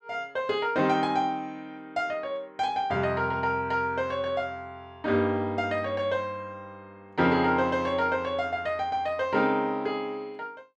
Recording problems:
none

